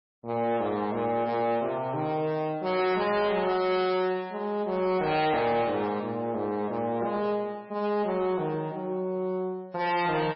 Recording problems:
codec artefacts; MP3, log-spectral distance 2 dB, nothing above 4.8 kHz
distorted audio; soft clipping, signal-to-distortion ratio 11 dB

